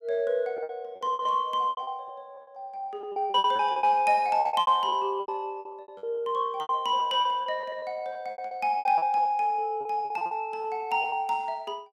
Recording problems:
packet loss; 17% of the sound replaced, filled with repeated pitch periods

